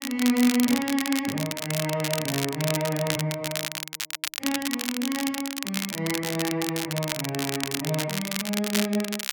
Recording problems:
crackle; vinyl, SNR 3 dB

